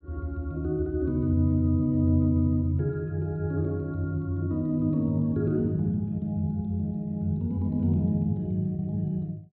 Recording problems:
low-pass filter; nothing above 4.3 kHz

